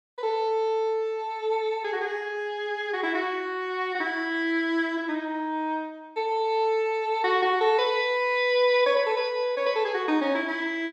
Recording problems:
none

